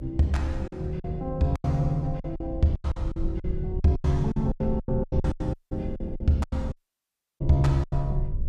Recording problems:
electrical hum; 60 Hz, harmonics up to 600 Hz, SNR 16 dB
rumble; below 78 Hz, SNR 8 dB
lost packets; 15% of the sound replaced, filled with silence
audio cutting out; at 5.5 s and at 7 s for 0.5 s

